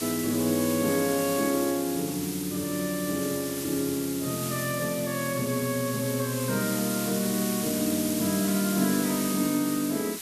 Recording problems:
background hiss; slope +2 dB per octave, SNR 5 dB

